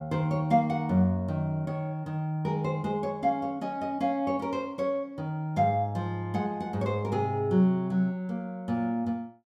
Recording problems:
none

